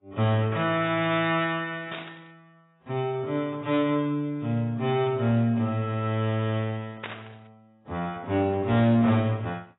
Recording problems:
codec artefacts; AAC, log-spectral distance 3 dB, nothing above 3.3 kHz
distorted audio; hard clipping, signal-to-distortion ratio 12 dB
static burst; at 2 s and at 7 s; peak -6 dB vs average level

